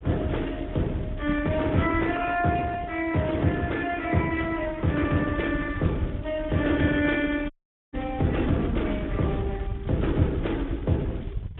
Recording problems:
treble missing; nothing above 3.6 kHz
lossy codec; Speex, log-spectral distance 2 dB
rumble; below 120 Hz, SNR 10 dB
dropout; at 7.5 s

